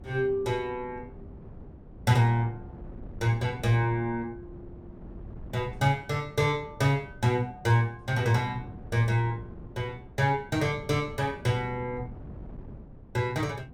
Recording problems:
wind noise; below 230 Hz, SNR 18 dB

